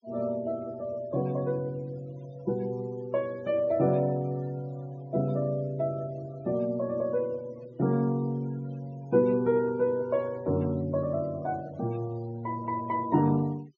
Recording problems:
low-pass filter; nothing above 6.9 kHz
denoising artefacts; signal-to-artefact ratio 25 dB

